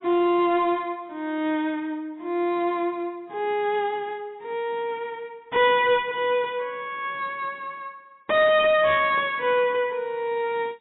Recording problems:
codec artefacts; AAC, log-spectral distance 2 dB, nothing above 3.5 kHz
distortion; hard clipping, signal-to-distortion ratio 10 dB

